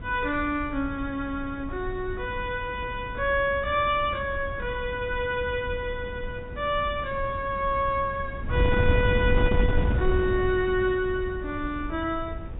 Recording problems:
treble cut off; nothing above 4 kHz
wind noise; below 120 Hz, SNR 5 dB

